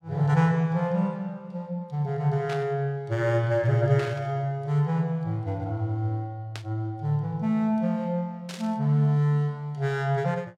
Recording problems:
burst of static; 4 times, first at 2.5 s; peak -8 dB vs average level

